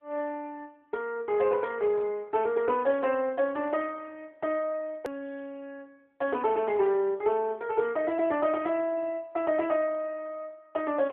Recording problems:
telephone audio; 260 Hz to 3.1 kHz, AMR-NB
edit click; at 5 s

